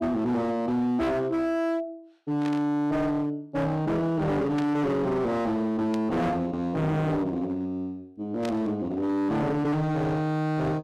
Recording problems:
distorted audio; hard clipping, signal-to-distortion ratio 8 dB
burst of static; 4 times, first at 2.5 s; peak -8 dB vs average level

